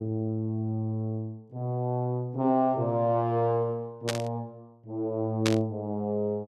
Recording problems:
burst of static; at 4 s and at 5.5 s; peak +4 dB vs average level

